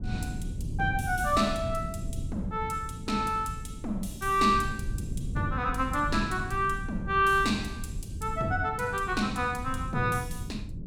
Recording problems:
low-frequency rumble; below 150 Hz, SNR 8 dB

